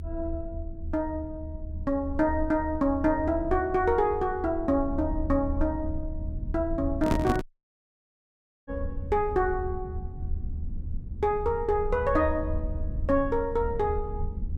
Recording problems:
rumble; below 78 Hz, SNR 8 dB
handling noise; at 7 s; peak +4 dB vs average level
audio cutting out; at 7.5 s for 1.5 s

